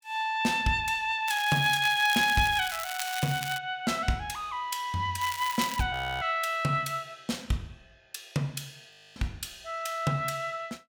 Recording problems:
crackling; from 1.5 to 3.5 s and at 5 s; loose cable, SNR 9 dB
audio freezing; at 6 s and at 9 s

